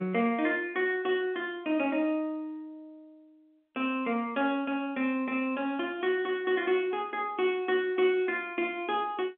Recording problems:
telephone audio; 130 Hz to 3.4 kHz, G.711

